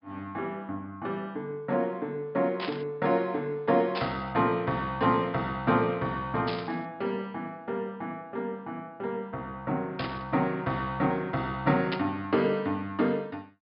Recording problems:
low-pass filter; nothing above 5.5 kHz
burst of static; 5 times, first at 2.5 s; peak 0 dB vs average level

